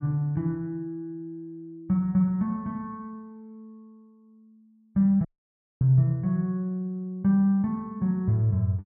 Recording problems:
audio cutting out; at 5.5 s for 0.5 s

